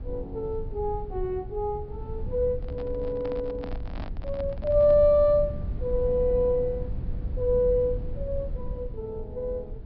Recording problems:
treble cut off; nothing above 5.5 kHz
rumble; below 88 Hz, SNR 9 dB
handling noise; from 2.5 to 5 s; peak -10 dB vs average level

